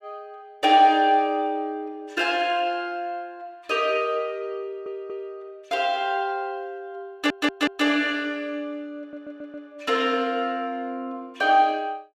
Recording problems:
stutter; at 4.5 s, at 7 s and at 9 s

